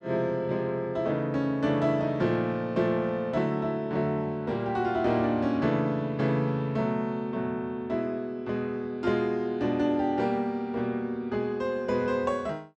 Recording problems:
none

